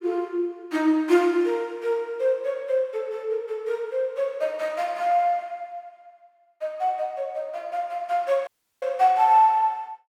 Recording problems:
dropout; at 8.5 s

